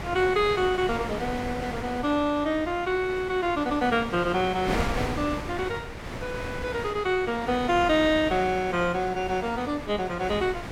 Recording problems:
wind on the microphone; below 1.6 kHz, SNR 9 dB

